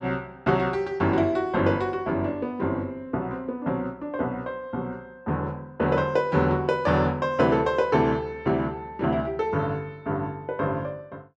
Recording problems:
none

